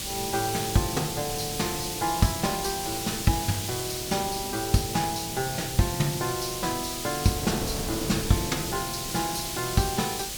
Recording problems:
hum; 50 Hz, harmonics up to 300 Hz, SNR 20 dB
background hiss; slope +3 dB per octave, SNR 3 dB
wind on the microphone; below 500 Hz, SNR 12 dB

